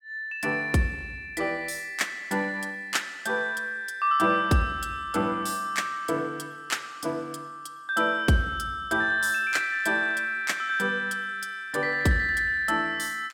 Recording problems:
none

